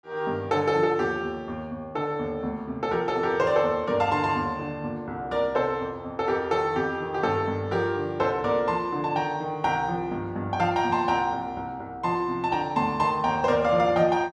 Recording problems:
none

